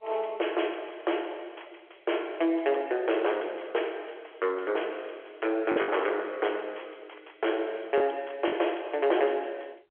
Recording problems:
telephone audio; 300 Hz to 3.4 kHz, G.711
distortion; soft clipping, signal-to-distortion ratio 9 dB
packet loss; 1.7% of the sound replaced, filled with the last packet

